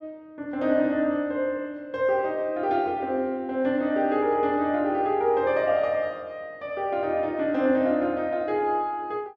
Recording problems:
none

